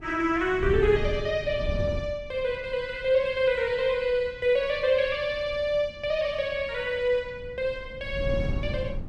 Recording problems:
wind on the microphone; below 150 Hz, SNR 9 dB

